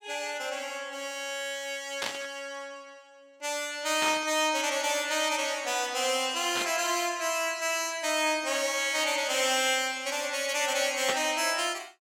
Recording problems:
burst of static; 4 times, first at 2 s; peak 0 dB vs average level

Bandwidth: 16.5 kHz